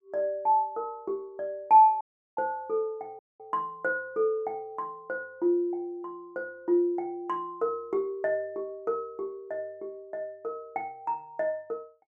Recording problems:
audio cutting out; at 2 s and at 3 s

